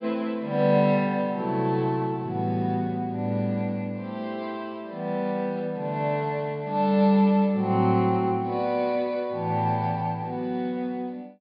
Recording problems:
treble cut off; nothing above 5.5 kHz

